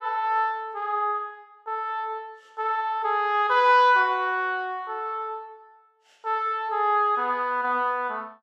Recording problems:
none

